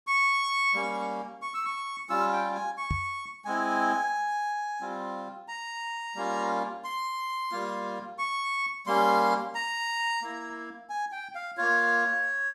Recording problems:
knock on the microphone; at 3 s; peak +2 dB vs average level

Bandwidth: 15 kHz